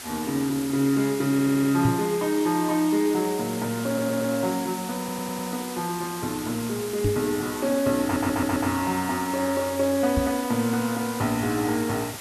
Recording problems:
hiss; slope -1 dB per octave, SNR 11 dB
stutter; 4 times, first at 1.5 s
microphone thump; at 2 s, at 7 s and at 10 s; peak +4 dB vs average level

